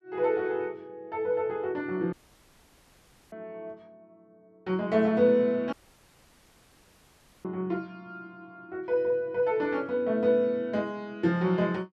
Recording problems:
dropout; at 2 s for 1 s and at 5.5 s for 1.5 s

